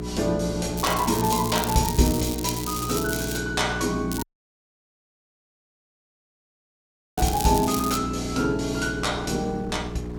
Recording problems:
hum; 60 Hz, harmonics up to 420 Hz, SNR 8 dB
wind on the microphone; below 530 Hz, SNR 20 dB
crackling; from 1 to 3.5 s, at 4 s and at 7 s; loose cable, SNR 7 dB
audio cutting out; at 4 s for 3 s

